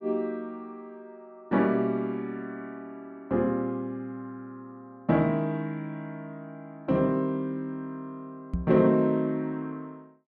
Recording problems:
knock on the microphone; at 8.5 s; peak +2 dB vs average level

